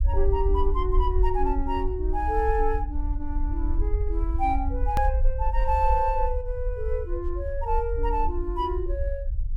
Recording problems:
rumble; below 56 Hz, SNR 1 dB
edit click; at 5 s

